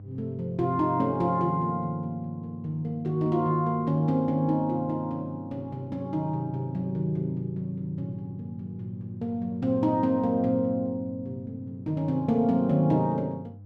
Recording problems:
electrical hum; 50 Hz, harmonics up to 500 Hz, SNR 17 dB

